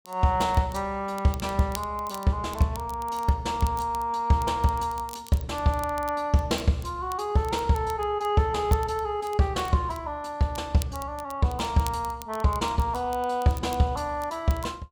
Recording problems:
crackle; vinyl, SNR 19 dB

